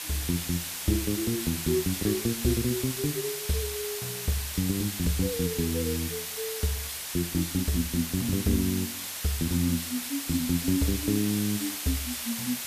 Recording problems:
hiss; slope +2 dB per octave, SNR 3 dB

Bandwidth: 14.5 kHz